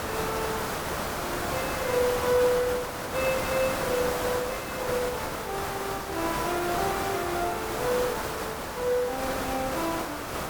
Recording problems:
background hiss; SNR 1 dB

